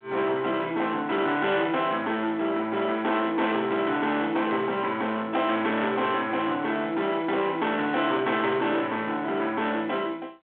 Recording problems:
phone line; 340 Hz to 3.9 kHz, G.726
distortion; soft clipping, signal-to-distortion ratio 11 dB

